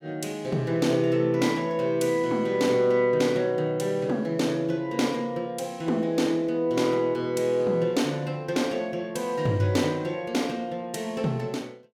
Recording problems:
none

